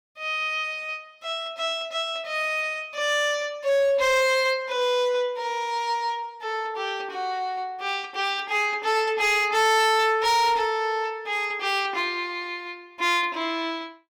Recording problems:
distorted audio; hard clipping, signal-to-distortion ratio 10 dB

